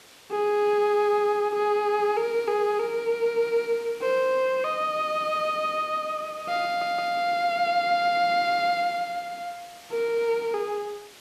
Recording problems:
background hiss; slope -1 dB per octave, SNR 22 dB
stutter; at 6.5 s

